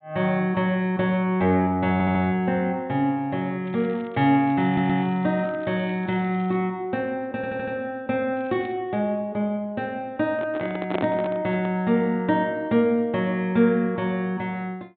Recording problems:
treble missing; nothing above 4 kHz
audio stuttering; at 2 s, at 4.5 s and at 7.5 s
crackle; from 3.5 to 6.5 s and at 8.5 s; loose cable, SNR 28 dB
handling noise; from 10 to 12 s; peak +1 dB vs average level

